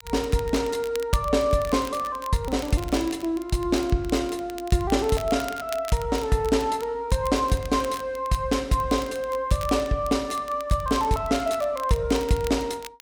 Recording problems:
crackling; vinyl, SNR 18 dB

